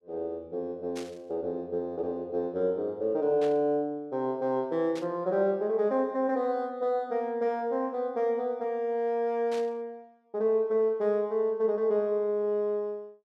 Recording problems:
static burst; 4 times, first at 1 s; peak -10 dB vs average level

